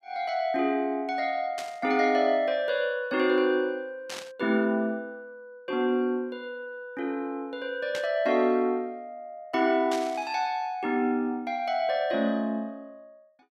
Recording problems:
static burst; 4 times, first at 1.5 s; peak -5 dB vs average level

